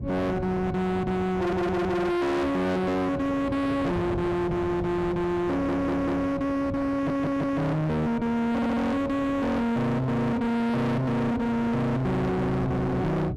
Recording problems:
distortion; hard clipping, signal-to-distortion ratio 5 dB
wind on the microphone; below 330 Hz, SNR 11 dB
audio stuttering; 4 times, first at 1.5 s

